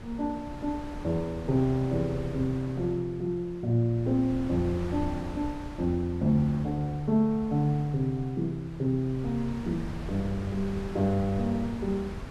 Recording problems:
wind on the microphone; below 340 Hz, SNR 12 dB

